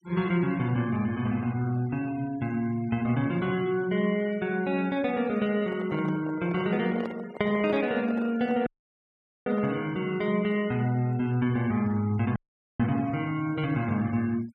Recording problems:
noise reduction artefacts; signal-to-artefact ratio 23 dB
microphone handling noise; from 5.5 to 10 s; peak -6 dB vs average level
audio cutting out; at 8.5 s for 1 s and at 12 s

